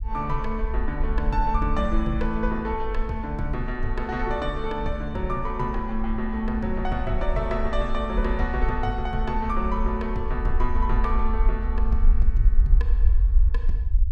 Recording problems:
rumble; below 52 Hz, SNR -1 dB

